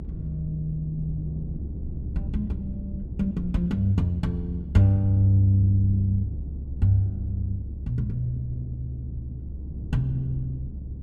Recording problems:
low-frequency rumble; below 130 Hz, strongest tone 68 Hz, SNR 8 dB

